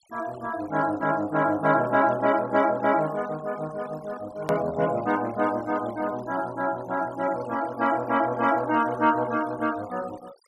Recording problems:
noise reduction artefacts; signal-to-artefact ratio 20 dB
edit click; at 4.5 s

